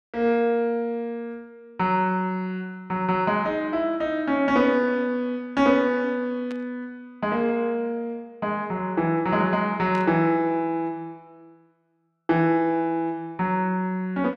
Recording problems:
static burst; at 6.5 s and at 10 s; peak -14 dB vs average level

